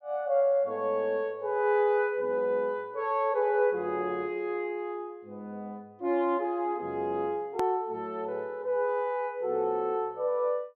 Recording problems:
edit click; at 7.5 s

